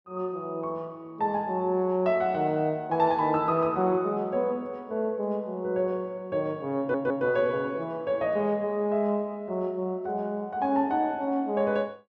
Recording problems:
audio stuttering; at 7 s

